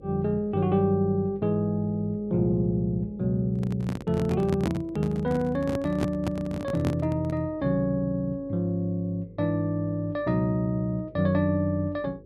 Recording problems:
hum; 50 Hz, harmonics up to 550 Hz, SNR 23 dB
handling noise; from 3.5 to 7.5 s; peak +2 dB vs average level

